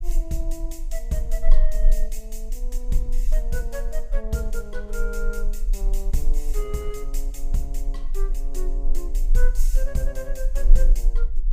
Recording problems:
rumble; below 30 Hz, strongest tone 18 Hz, SNR -6 dB

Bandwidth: 15.5 kHz